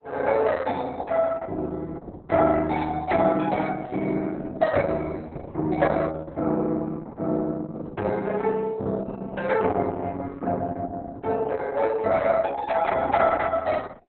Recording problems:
lossy codec; Opus, log-spectral distance 4 dB, nothing above 4 kHz

